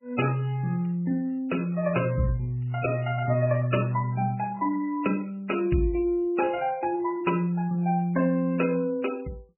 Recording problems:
codec artefacts; MP3, log-spectral distance 4 dB, nothing above 2.6 kHz

